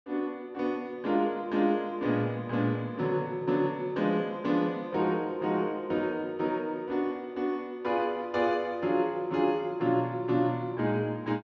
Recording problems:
treble cut off; nothing above 8 kHz

